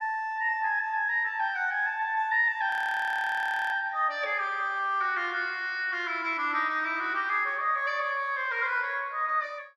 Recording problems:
frozen audio; at 2.5 s for 1 s

